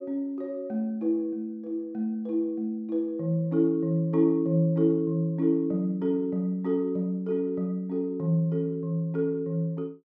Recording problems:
none

